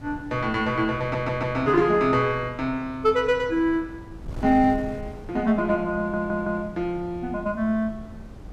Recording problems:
wind noise; below 210 Hz, SNR 17 dB
audio stuttering; at 1 s and at 6 s

